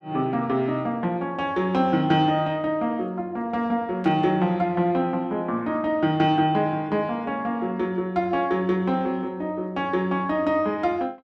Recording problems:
static burst; at 4 s; peak -16 dB vs average level

